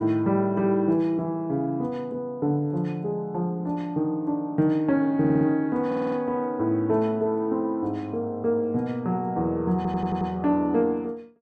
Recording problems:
stutter; at 5 s, at 6 s and at 10 s

